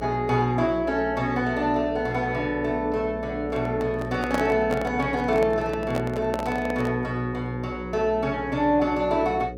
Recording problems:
mains hum; 60 Hz, harmonics up to 540 Hz, SNR 12 dB
handling noise; from 3.5 to 7 s; peak +1 dB vs average level

